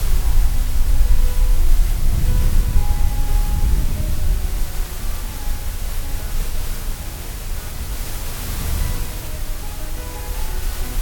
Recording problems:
hiss; slope -2 dB per octave, SNR -9 dB
low-frequency rumble; below 42 Hz, strongest tone 20 Hz, SNR -15 dB
wind noise; below 96 Hz, SNR -11 dB

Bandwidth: 17.5 kHz